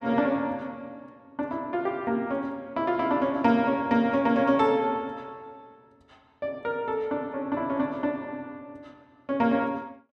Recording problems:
none

